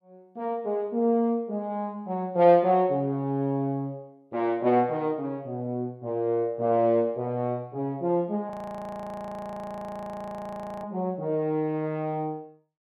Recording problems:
audio freezing; at 8.5 s for 2.5 s

